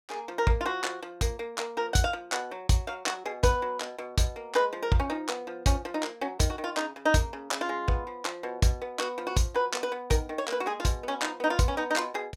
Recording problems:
none

